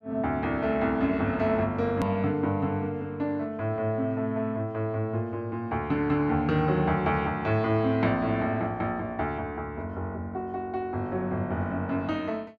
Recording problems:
click at an edit; at 2 s

